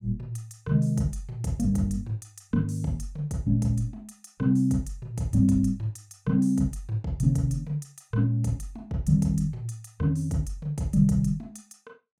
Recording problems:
none

